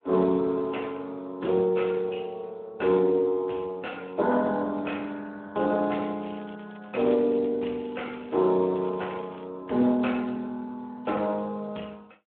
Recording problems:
telephone audio; 260 Hz to 3.7 kHz, Speex
crackling; from 5.5 to 7.5 s and from 8 to 9.5 s; loose cable, SNR 27 dB

